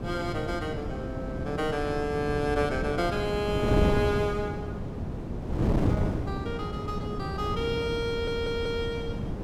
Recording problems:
wind on the microphone; below 320 Hz, SNR 1 dB
audio stuttering; at 8 s

